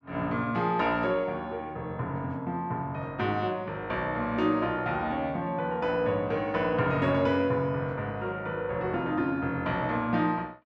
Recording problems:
none

